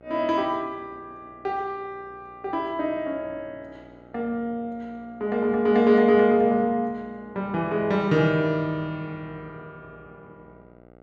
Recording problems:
mains hum; 60 Hz, harmonics up to 2.1 kHz, SNR 27 dB

